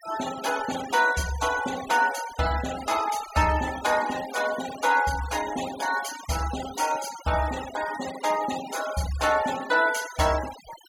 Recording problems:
noise reduction artefacts; signal-to-artefact ratio 12 dB

